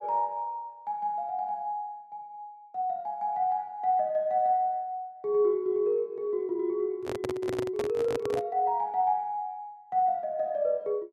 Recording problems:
microphone handling noise; from 7 to 8.5 s; peak -1 dB vs average level

